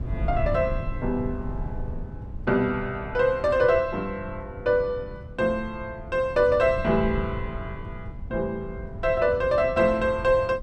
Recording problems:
wind on the microphone; below 130 Hz, SNR 11 dB

